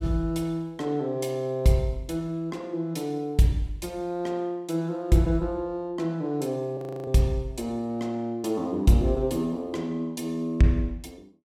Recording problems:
frozen audio; at 7 s

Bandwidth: 16 kHz